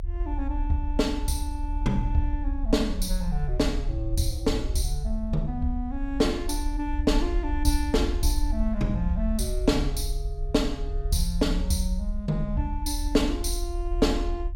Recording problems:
rumble; below 54 Hz, strongest tone 34 Hz, SNR 3 dB

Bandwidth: 16.5 kHz